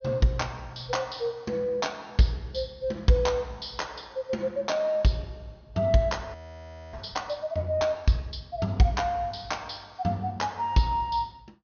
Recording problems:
low-pass filter; nothing above 6.5 kHz
frozen audio; at 6.5 s for 0.5 s

